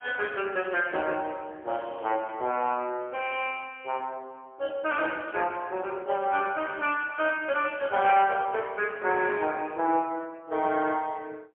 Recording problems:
telephone audio; 260 Hz to 3.3 kHz, AMR-NB, then MP3

